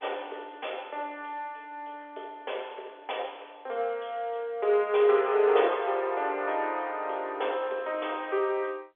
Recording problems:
telephone audio; 340 Hz to 3.5 kHz, G.711

